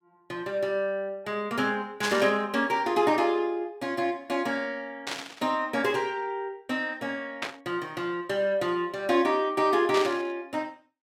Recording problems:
burst of static; 4 times, first at 2 s; peak +2 dB vs average level

